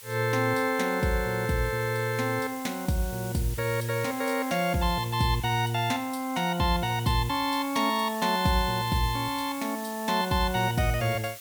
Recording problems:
hiss; slope +2 dB per octave, SNR 14 dB

